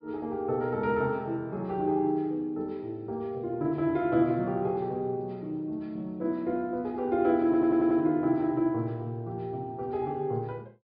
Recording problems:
treble cut off; nothing above 5.5 kHz
stutter; at 7.5 s

